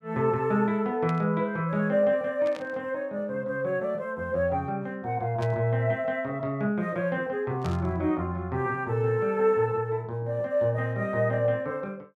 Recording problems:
static burst; 4 times, first at 1 s; peak -11 dB vs average level

